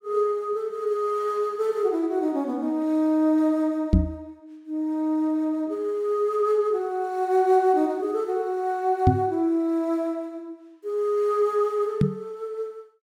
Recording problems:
microphone bump; at 4 s, at 9 s and at 12 s; peak +9 dB vs average level

